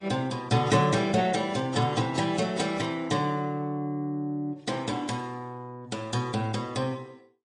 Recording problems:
codec artefacts; MP3, then AAC, log-spectral distance 3 dB, nothing above 8.7 kHz

